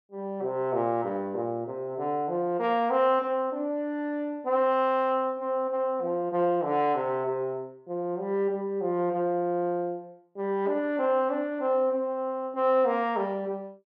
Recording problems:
none

